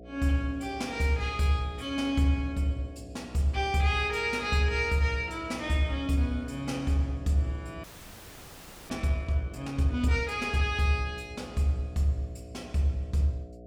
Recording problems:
hum; 60 Hz, harmonics up to 720 Hz, SNR 18 dB
audio freezing; at 8 s for 1 s

